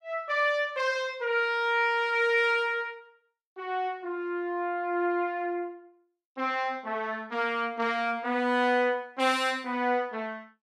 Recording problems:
none

